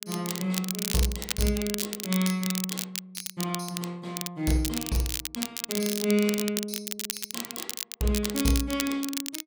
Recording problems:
crackle; vinyl, SNR 3 dB

